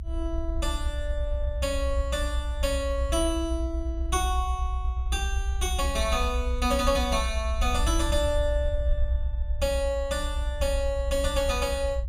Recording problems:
rumble; below 66 Hz, SNR 1 dB

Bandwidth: 15.5 kHz